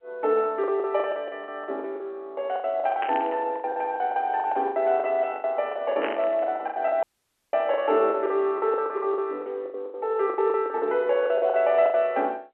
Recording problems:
telephone audio; 280 Hz to 3.2 kHz, G.711
lost packets; 19% of the sound replaced, filled with the last packet
static burst; at 3 s and at 6 s; peak -2 dB vs average level
audio cutting out; at 7 s for 0.5 s

